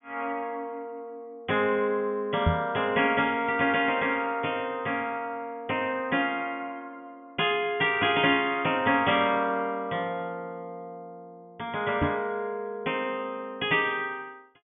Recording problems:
treble missing; nothing above 3.4 kHz
microphone thump; at 2.5 s and at 12 s; peak +6 dB vs average level

